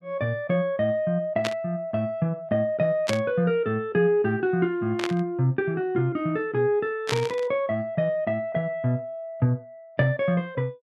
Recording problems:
burst of static; 4 times, first at 1.5 s; peak +2 dB vs average level

